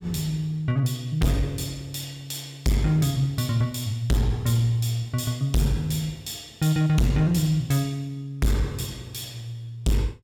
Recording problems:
distortion; hard clipping, signal-to-distortion ratio 6 dB

